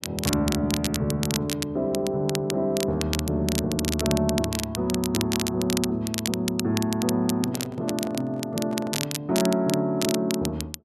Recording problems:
crackle; vinyl, SNR 6 dB
microphone handling noise; from 7.5 to 9 s; peak -9 dB vs average level

